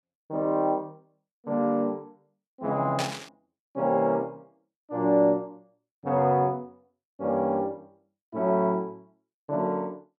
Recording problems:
burst of static; at 3 s; peak -1 dB vs average level

